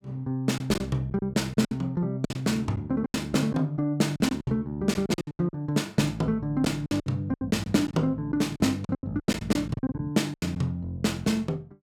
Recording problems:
packet loss; 13% of the sound replaced, filled with silence

